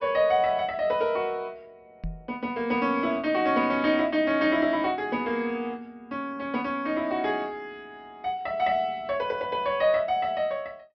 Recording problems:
treble missing; nothing above 5.5 kHz
knock on the microphone; at 2 s; peak -5 dB vs average level

